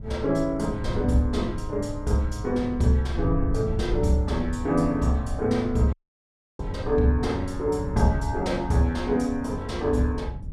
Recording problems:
wind on the microphone; below 110 Hz, SNR 8 dB
audio cutting out; at 6 s for 0.5 s

